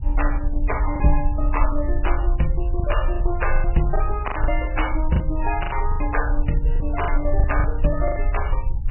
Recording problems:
lossy codec; MP3, log-spectral distance 3 dB, nothing above 2.9 kHz
low-frequency rumble; below 50 Hz, strongest tone 26 Hz, SNR -1 dB
packet loss; 9% of the sound replaced, filled with the last packet

